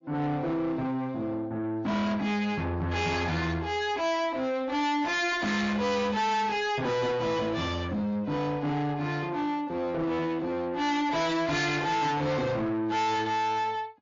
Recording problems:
codec artefacts; MP3, then MP3, log-spectral distance 2 dB, nothing above 6.9 kHz
distortion; soft clipping, signal-to-distortion ratio 7 dB

